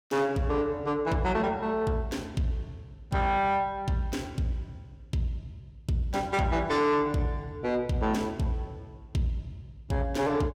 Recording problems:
distortion; soft clipping, signal-to-distortion ratio 10 dB

